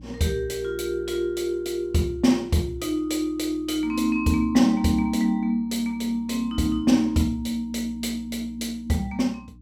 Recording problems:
hum; 60 Hz, harmonics up to 300 Hz, SNR 22 dB

